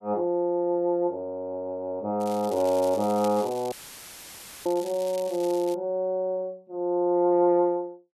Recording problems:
crackling; from 2 to 5.5 s; loose cable, SNR 18 dB
dropout; at 3.5 s for 1 s; filled with static

